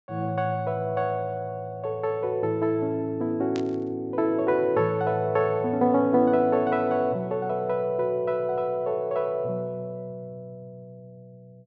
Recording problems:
treble missing; nothing above 8 kHz
static burst; at 3.5 s; peak -9 dB vs average level

